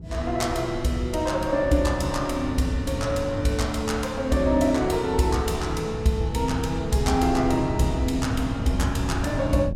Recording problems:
wind noise; below 170 Hz, SNR 10 dB

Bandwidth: 16.5 kHz